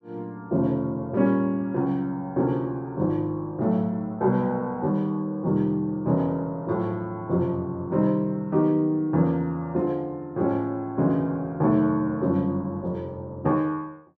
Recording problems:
none

